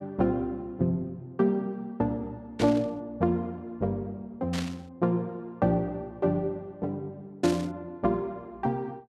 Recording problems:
burst of static; at 2.5 s, at 4.5 s and at 7.5 s; peak -2 dB vs average level

